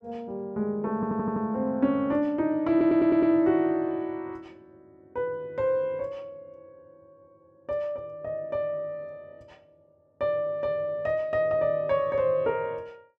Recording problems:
stutter; at 1 s and at 2.5 s

